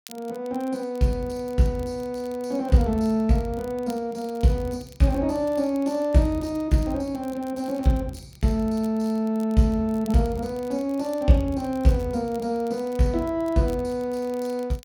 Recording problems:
crackle; vinyl, SNR 26 dB

